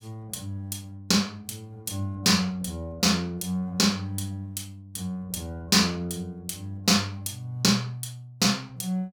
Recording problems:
none

